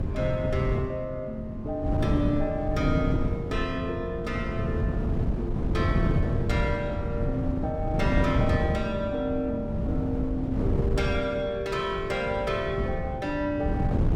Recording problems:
hum; 50 Hz, harmonics up to 350 Hz, SNR 18 dB
wind on the microphone; below 200 Hz, SNR 0 dB

